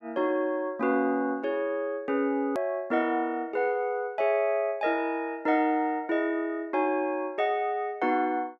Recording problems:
edit click; at 2.5 s

